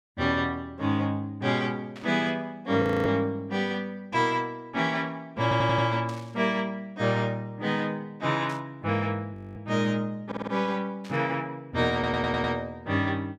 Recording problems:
static burst; 4 times, first at 2 s; peak -13 dB vs average level
frozen audio; at 3 s and at 9.5 s
audio stuttering; at 5.5 s, at 10 s and at 12 s

